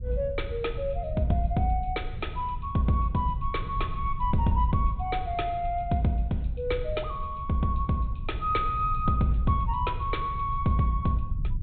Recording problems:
treble cut off; nothing above 4 kHz
rumble; below 90 Hz, SNR 7 dB

